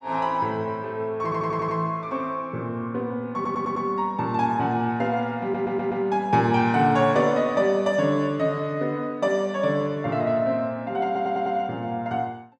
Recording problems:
stutter; 4 times, first at 1 s

